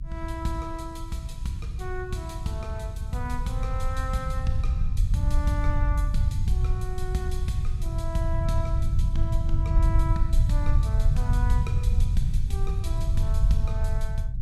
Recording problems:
hum; 50 Hz, harmonics up to 300 Hz, SNR 18 dB
low-frequency rumble; below 84 Hz, SNR -6 dB

